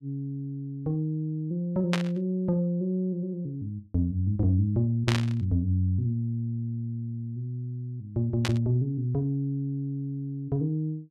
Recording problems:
burst of static; at 2 s, at 5 s and at 8.5 s; peak +4 dB vs average level

